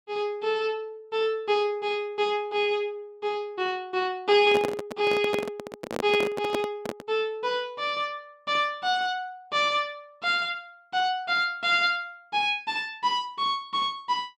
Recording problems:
microphone handling noise; from 4.5 to 7 s; peak +1 dB vs average level

